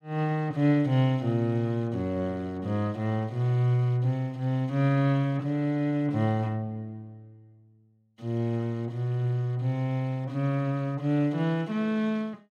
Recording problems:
none

